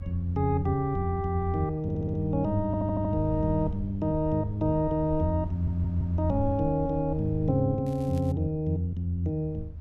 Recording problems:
low-frequency rumble; below 82 Hz, SNR 11 dB
audio stuttering; at 2 s, at 2.5 s and at 5.5 s
crackling; at 8 s; loose cable, SNR 29 dB

